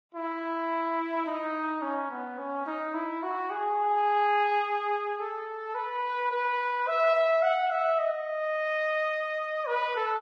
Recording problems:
codec artefacts; Vorbis, log-spectral distance 2 dB

